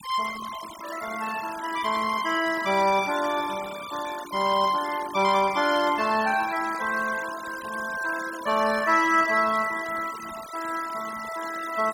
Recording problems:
noise reduction artefacts; signal-to-artefact ratio 14 dB

